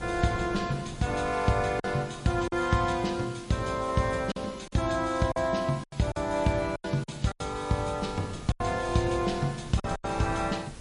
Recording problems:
lossy codec; MP3, log-spectral distance 6 dB, nothing above 9.8 kHz
background hiss; slope 0 dB per octave, SNR 21 dB
wind noise; below 270 Hz, SNR 19 dB
packet loss; 7% of the sound replaced, filled with silence

